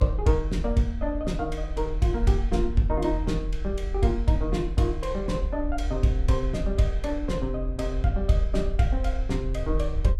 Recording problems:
rumble; below 50 Hz, strongest tone 42 Hz, SNR 4 dB

